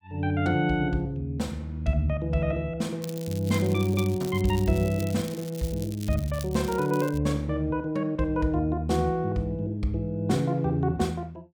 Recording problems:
crackling; from 3 to 7 s; loose cable, SNR 17 dB

